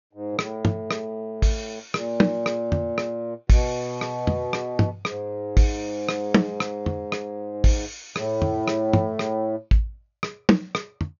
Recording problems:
treble missing; nothing above 6.9 kHz

